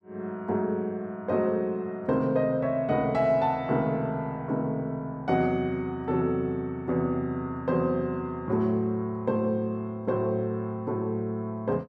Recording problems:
none

